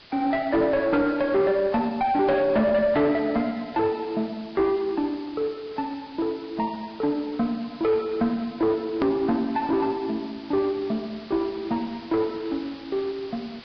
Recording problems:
treble cut off; nothing above 5.5 kHz
codec artefacts; Vorbis, log-spectral distance 7 dB
distorted audio; soft clipping, signal-to-distortion ratio 10 dB
hiss; SNR 19 dB
hard cut with a click; at 9 s

